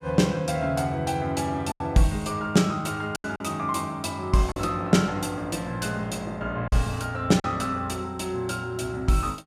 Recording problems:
packet loss; 3% of the sound replaced, filled with silence

